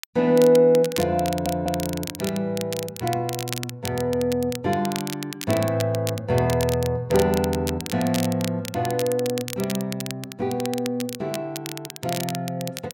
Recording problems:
crackle; vinyl, SNR 11 dB
stutter; at 1.5 s

